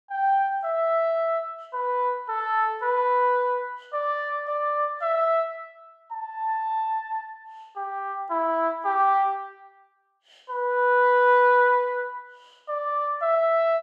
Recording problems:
none

